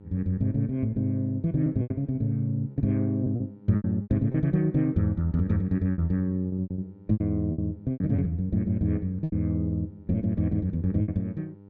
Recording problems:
hum; 50 Hz, harmonics up to 1 kHz, SNR 23 dB
packet loss; 9% of the sound replaced, filled with repeated pitch periods

